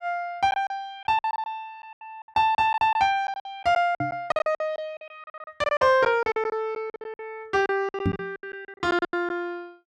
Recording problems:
packet loss; 18% of the sound replaced, filled with silence
microphone thump; at 4 s and at 8 s; peak +4 dB vs average level

